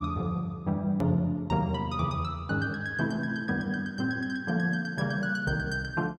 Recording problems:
click at an edit; at 1 s

